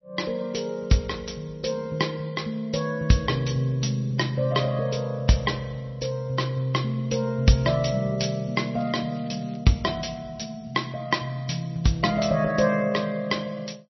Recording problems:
lossy codec; MP3, log-spectral distance 4 dB, nothing above 5.8 kHz
crackling; at 8.5 s; loose cable, SNR 28 dB

